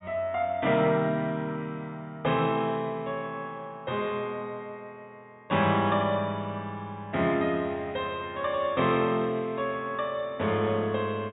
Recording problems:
low-pass filter; nothing above 4 kHz

